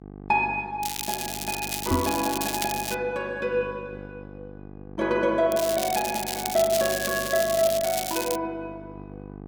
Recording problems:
hum; 50 Hz, harmonics up to 1.2 kHz, SNR 16 dB
crackle; from 1 to 3 s and from 5.5 to 8.5 s; loose cable, SNR 5 dB
microphone bump; at 2 s; peak +4 dB vs average level

